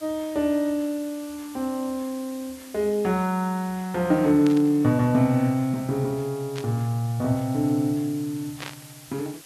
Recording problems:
background hiss; slope +1 dB per octave, SNR 20 dB
static burst; at 4.5 s, at 6.5 s and at 8.5 s; peak -6 dB vs average level

